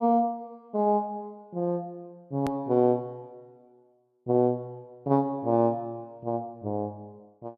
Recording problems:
hard cut with a click; at 2.5 s

